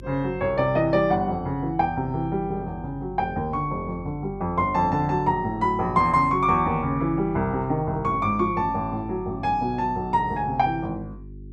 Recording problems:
hum; 50 Hz, harmonics up to 400 Hz, SNR 17 dB

